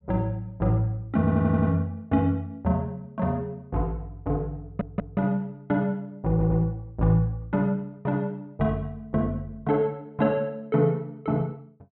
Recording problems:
low-pass filter; nothing above 4.1 kHz
stutter; at 1 s, at 4.5 s and at 6.5 s

